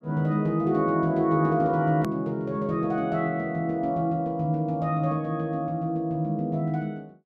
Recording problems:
hard cut with a click; at 2 s

